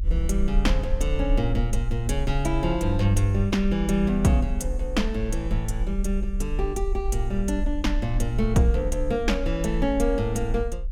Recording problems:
rumble; below 52 Hz, strongest tone 34 Hz, SNR 4 dB

